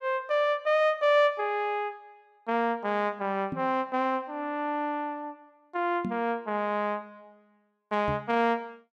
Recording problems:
microphone thump; at 3.5 s, at 6 s and at 8 s; peak -2 dB vs average level

